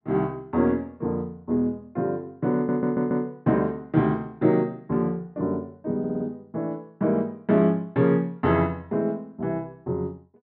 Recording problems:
treble missing; nothing above 5.5 kHz
stutter; at 2.5 s and at 6 s

